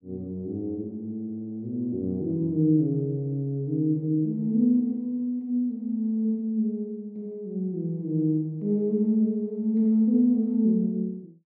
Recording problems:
treble cut off; nothing above 5.5 kHz

